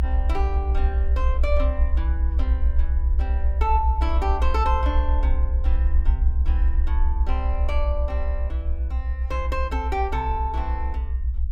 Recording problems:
low-frequency rumble; below 66 Hz, SNR -6 dB

